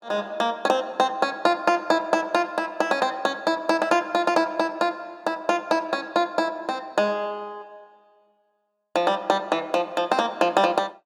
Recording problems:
none

